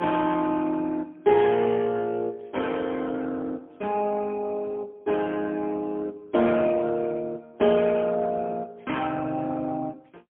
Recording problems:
phone line; 190 Hz to 3.3 kHz, AMR-NB, then MP3

